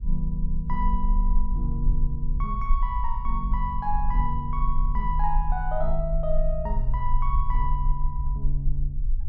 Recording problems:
rumble; below 42 Hz, strongest tone 20 Hz, SNR -2 dB

